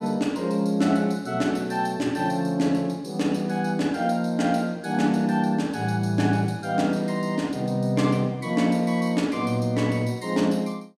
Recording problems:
none

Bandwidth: 15.5 kHz